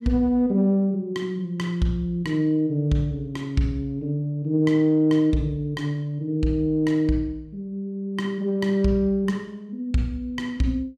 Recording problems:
none

